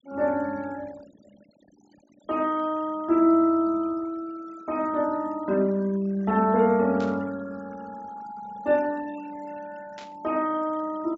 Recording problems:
treble missing; nothing above 8 kHz
denoising artefacts; signal-to-artefact ratio 25 dB
static burst; at 7 s and at 10 s; peak -14 dB vs average level

